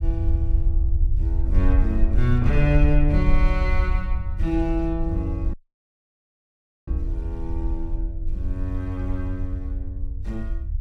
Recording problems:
rumble; below 64 Hz, SNR -2 dB
audio cutting out; at 5.5 s for 1.5 s

